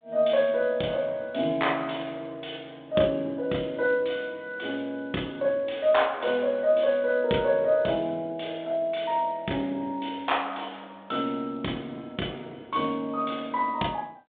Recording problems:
phone line; 170 Hz to 3.7 kHz, G.726

